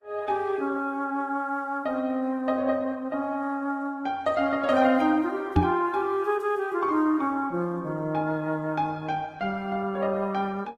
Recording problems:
codec artefacts; Opus, then Vorbis, log-spectral distance 2 dB, nothing above 15.1 kHz
microphone bump; at 5.5 s; peak +7 dB vs average level

